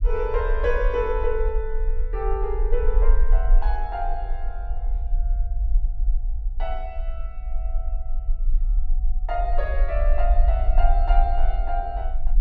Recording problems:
rumble; below 44 Hz, SNR -3 dB

